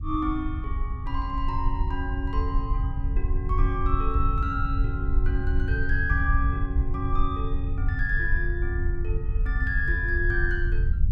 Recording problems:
rumble; below 74 Hz, SNR -3 dB

